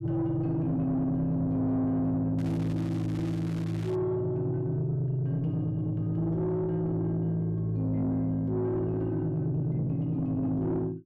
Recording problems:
distortion; soft clipping, signal-to-distortion ratio 10 dB
crackle; from 2.5 to 4 s; loose cable, SNR 20 dB

